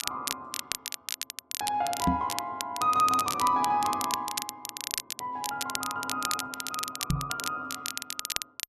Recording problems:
crackle; vinyl, SNR 4 dB
microphone thump; at 2 s and at 7 s; peak +7 dB vs average level

